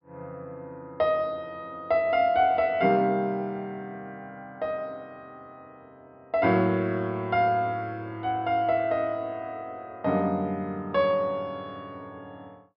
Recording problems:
treble cut off; nothing above 5.5 kHz

